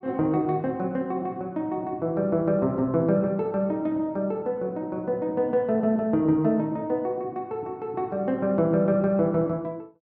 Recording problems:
none

